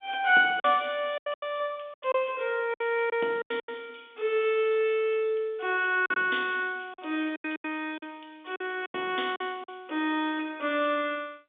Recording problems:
telephone audio; 260 Hz to 3.6 kHz, G.711
lost packets; 9% of the sound replaced, filled with silence

